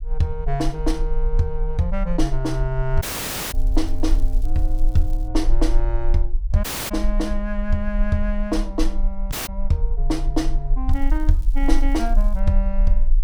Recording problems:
rumble; below 36 Hz, strongest tone 20 Hz, SNR 0 dB
dropout; at 3 s for 0.5 s, at 6.5 s and at 9.5 s
crackling; from 3.5 to 5.5 s and from 11 to 12 s; loose cable, SNR 26 dB

